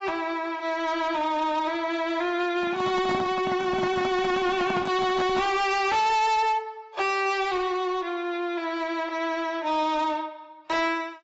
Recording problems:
lossy codec; AAC, log-spectral distance 2 dB, nothing above 7.6 kHz
distortion; hard clipping, signal-to-distortion ratio 7 dB
microphone handling noise; from 2.5 to 5.5 s; peak -2 dB vs average level

